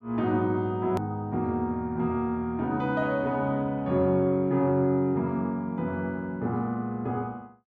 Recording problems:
edit click; at 1 s

